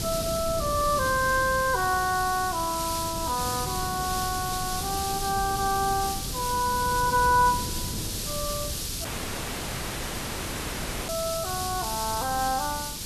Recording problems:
background hiss; SNR 5 dB
wind on the microphone; below 230 Hz, SNR 10 dB
audio cutting out; at 9 s for 2 s

